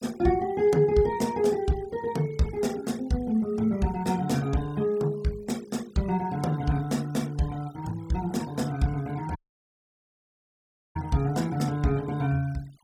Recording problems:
noise reduction artefacts; signal-to-artefact ratio 22 dB
audio cutting out; at 9.5 s for 1.5 s

